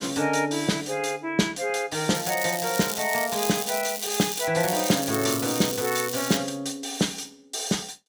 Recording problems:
crackling; from 2 to 4.5 s and from 4.5 to 6.5 s; loose cable, SNR 6 dB

